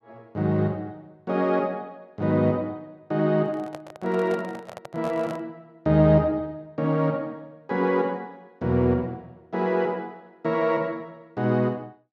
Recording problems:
microphone handling noise; from 3.5 to 5.5 s; peak -8 dB vs average level

